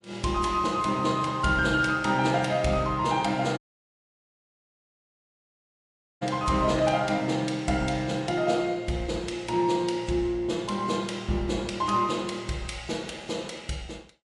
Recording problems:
lossy compression; MP3, log-spectral distance 2 dB, nothing above 11 kHz
audio cutting out; at 3.5 s for 2.5 s

